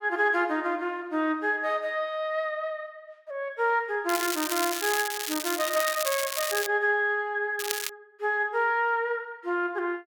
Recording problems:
crackling; from 4 to 6.5 s and at 7.5 s; loose cable, SNR 3 dB

